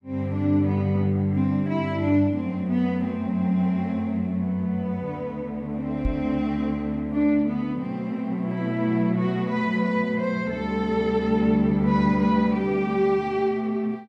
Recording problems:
knock on the microphone; at 6 s; peak +1 dB vs average level

